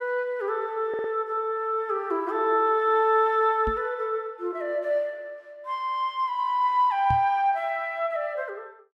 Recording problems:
stutter; at 1 s
microphone bump; at 3.5 s and at 7 s; peak -2 dB vs average level

